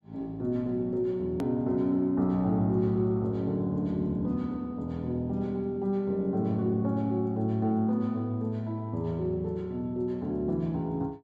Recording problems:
click at an edit; at 1.5 s

